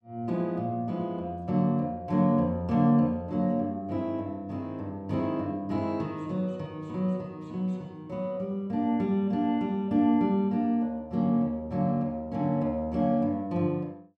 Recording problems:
none

